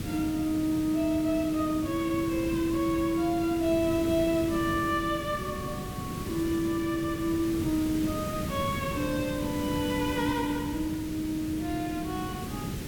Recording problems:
hiss; SNR 7 dB

